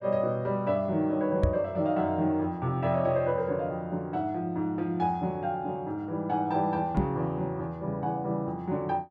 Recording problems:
microphone thump; at 1.5 s and at 7 s; peak +7 dB vs average level

